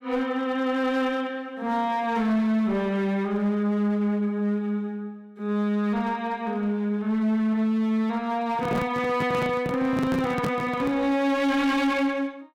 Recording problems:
distortion; hard clipping, uneven, signal-to-distortion ratio 10 dB
handling noise; from 8.5 to 11 s; peak +1 dB vs average level

